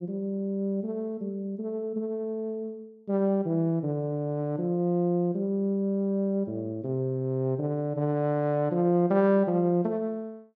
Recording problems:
none

